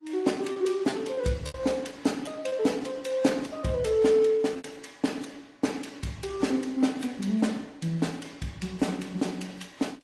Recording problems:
lossy codec; AAC, then Opus, log-spectral distance 4 dB
packet loss; 3% of the sound replaced, filled with repeated pitch periods

